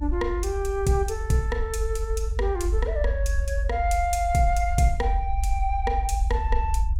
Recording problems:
low-frequency rumble; below 70 Hz, strongest tone 50 Hz, SNR 2 dB

